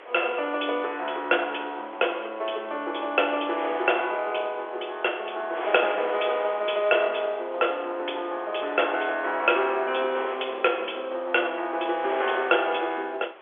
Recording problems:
phone line; 320 Hz to 3.4 kHz, G.711
wind on the microphone; below 1.8 kHz, SNR 14 dB

